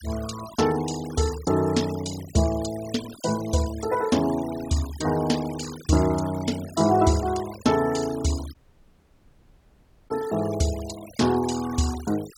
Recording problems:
noise reduction artefacts; signal-to-artefact ratio 15 dB
dropout; at 8.5 s for 1.5 s

